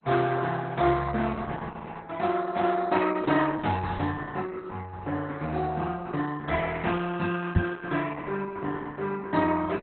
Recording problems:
codec artefacts; Opus, then MP2, log-spectral distance 4 dB, nothing above 4 kHz
knock on the microphone; at 7.5 s; peak +9 dB vs average level

